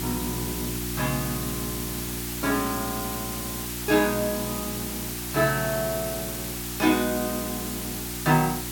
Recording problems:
electrical hum; 60 Hz, harmonics up to 360 Hz, SNR 8 dB
hiss; SNR 4 dB

